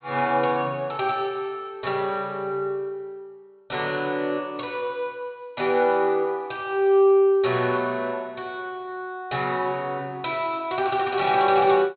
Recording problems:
treble missing; nothing above 4.4 kHz

